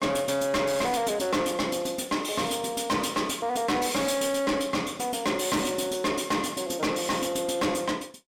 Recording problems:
distortion; soft clipping, signal-to-distortion ratio 7 dB

